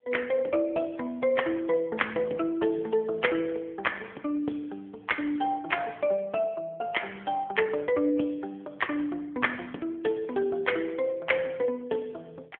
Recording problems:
phone line; 260 Hz to 3.3 kHz, AMR-NB

